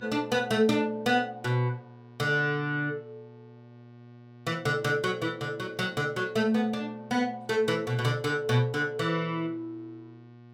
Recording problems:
hum; 60 Hz, harmonics up to 1.4 kHz, SNR 22 dB

